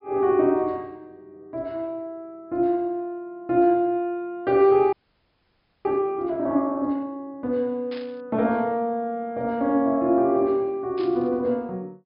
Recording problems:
low-pass filter; nothing above 5.5 kHz
audio freezing; at 5 s for 1 s
static burst; at 8 s and at 11 s; peak -13 dB vs average level

